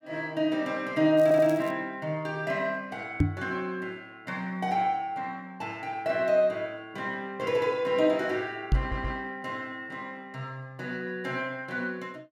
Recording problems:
crackling; at 1 s; loose cable, SNR 23 dB
audio stuttering; at 1 s and at 9 s
microphone thump; at 3 s and at 8.5 s; peak +9 dB vs average level

